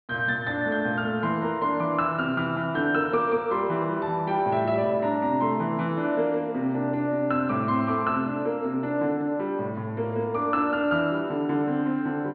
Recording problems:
low-pass filter; nothing above 4.6 kHz

